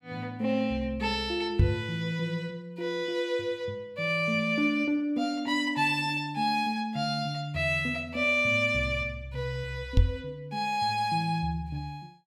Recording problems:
microphone bump; at 1.5 s and at 10 s; peak +10 dB vs average level

